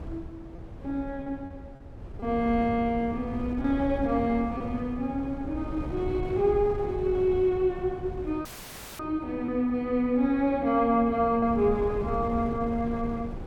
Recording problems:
wind noise; below 230 Hz, SNR 12 dB
packet loss; 1.5% of the sound replaced, filled with repeated pitch periods
audio cutting out; at 8.5 s for 0.5 s; filled with static

